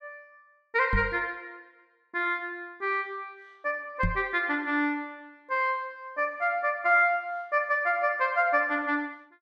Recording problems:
microphone bump; at 1 s and at 4 s; peak +2 dB vs average level

